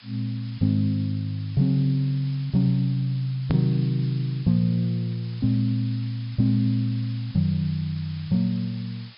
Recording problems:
treble missing; nothing above 5.5 kHz
background hiss; SNR 22 dB
hard cut with a click; at 3.5 s

